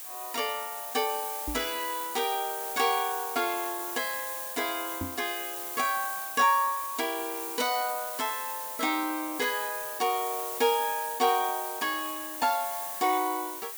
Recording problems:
background hiss; slope 0 dB per octave, SNR 5 dB
microphone thump; at 1.5 s and at 5 s; peak -2 dB vs average level

